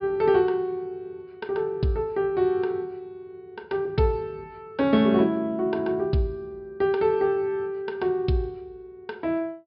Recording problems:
treble cut off; nothing above 5.1 kHz

